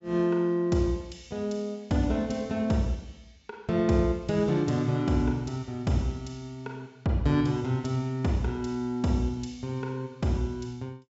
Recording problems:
treble cut off; nothing above 8 kHz

